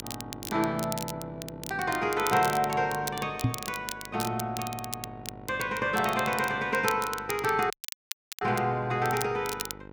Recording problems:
electrical hum; 50 Hz, harmonics up to 2 kHz, SNR 18 dB
crackle; vinyl, SNR 10 dB
microphone bump; at 3.5 s; peak +6 dB vs average level
dropout; at 7.5 s for 0.5 s

